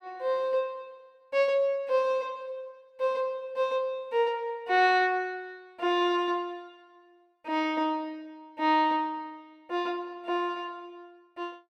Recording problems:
none

